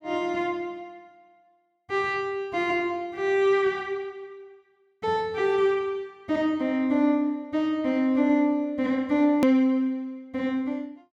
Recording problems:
hard cut with a click; at 9.5 s

